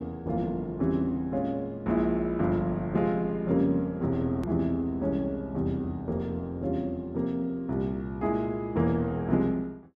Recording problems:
click at an edit; at 4.5 s

